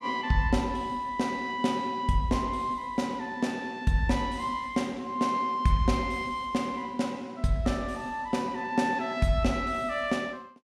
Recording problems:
none

